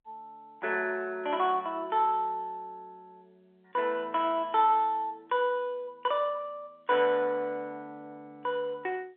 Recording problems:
phone line; 320 Hz to 3.5 kHz, G.711

